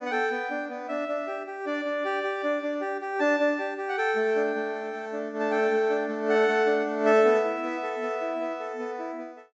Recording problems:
treble missing; nothing above 8 kHz

